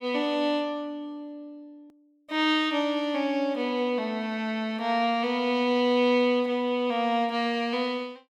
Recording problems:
edit click; at 2 s

